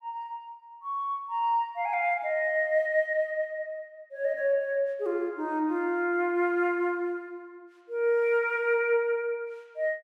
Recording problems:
none

